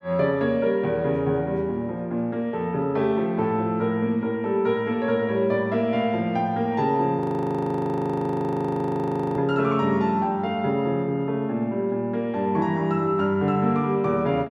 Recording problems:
frozen audio; at 7 s for 2 s

